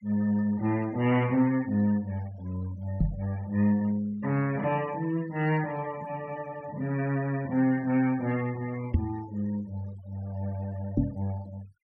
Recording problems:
noise reduction artefacts; signal-to-artefact ratio 22 dB
microphone thump; at 3 s, at 9 s and at 11 s; peak +8 dB vs average level

